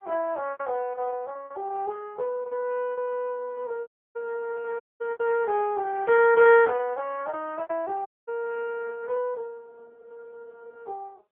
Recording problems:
phone line; 340 Hz to 2.8 kHz, AMR-NB
lost packets; 11% of the sound replaced, filled with repeated pitch periods
audio cutting out; at 4 s, at 5 s and at 8 s

